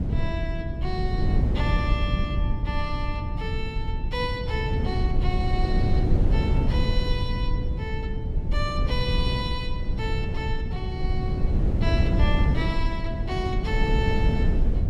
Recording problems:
low-frequency rumble; below 110 Hz, SNR -2 dB
wind noise; below 130 Hz, SNR -4 dB

